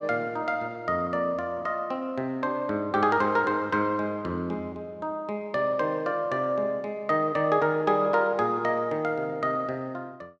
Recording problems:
none

